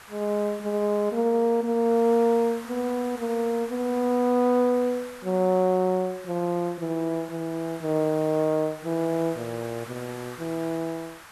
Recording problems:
background hiss; SNR 18 dB

